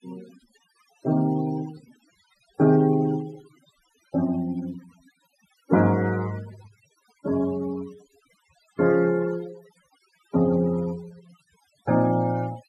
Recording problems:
noise reduction artefacts; signal-to-artefact ratio 22 dB

